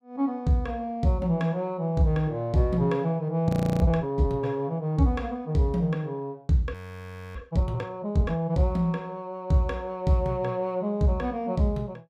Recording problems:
frozen audio; at 3.5 s and at 6.5 s for 0.5 s

